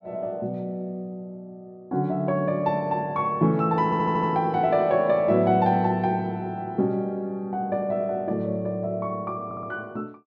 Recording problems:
stutter; at 4 s and at 9.5 s

